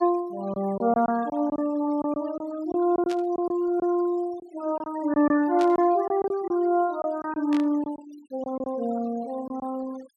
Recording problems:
noise reduction artefacts; signal-to-artefact ratio 22 dB
lost packets; 7% of the sound replaced, filled with silence
static burst; at 3 s, at 5.5 s and at 7.5 s; peak -8 dB vs average level

